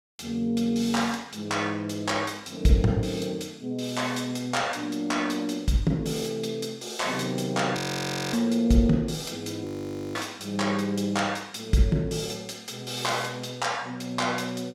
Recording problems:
frozen audio; at 8 s for 0.5 s and at 9.5 s for 0.5 s

